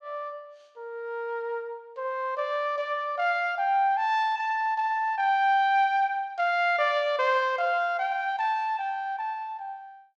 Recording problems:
none

